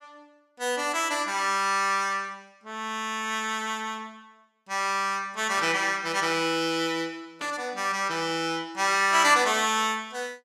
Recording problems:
burst of static; at 5.5 s and at 7.5 s; peak -7 dB vs average level

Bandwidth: 15 kHz